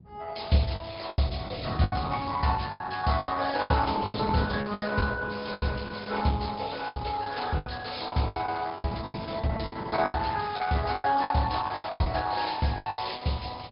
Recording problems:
treble missing; nothing above 5.2 kHz
lossy codec; Opus, log-spectral distance 8 dB
wind on the microphone; below 240 Hz, SNR 13 dB
lost packets; 14% of the sound replaced, filled with the last packet

